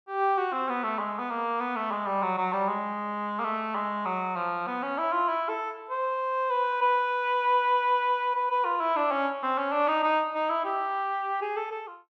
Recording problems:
none

